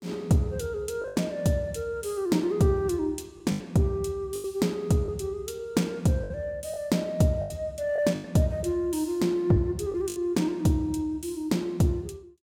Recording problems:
packet loss; 5% of the sound replaced, filled with the last packet

